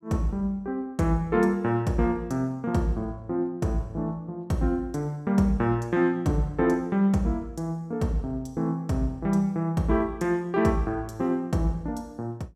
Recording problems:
none

